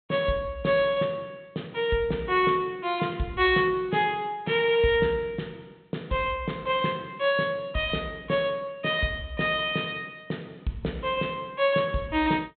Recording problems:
treble cut off; nothing above 4 kHz

